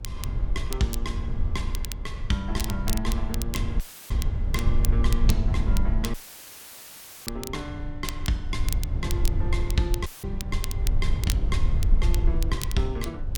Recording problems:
hum; 60 Hz, harmonics up to 540 Hz, SNR 24 dB
low-frequency rumble; below 68 Hz, SNR -4 dB
crackle; vinyl, SNR 6 dB
audio cutting out; at 4 s, at 6 s for 1 s and at 10 s; filled with static

